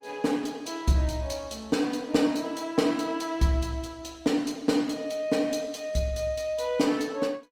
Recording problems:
lossy compression; Opus, log-spectral distance 3 dB, nothing above 19 kHz

